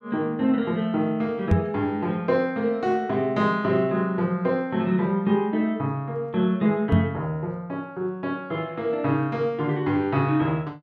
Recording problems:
microphone bump; at 1.5 s and at 7 s; peak +8 dB vs average level

